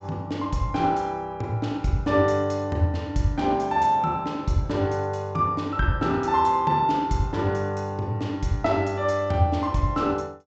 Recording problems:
treble cut off; nothing above 8 kHz

